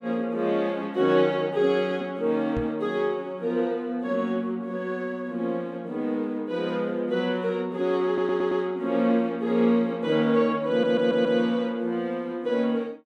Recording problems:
microphone thump; at 2.5 s; peak -4 dB vs average level
audio stuttering; at 8 s and at 11 s

